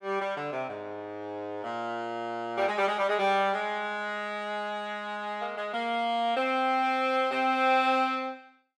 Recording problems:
none

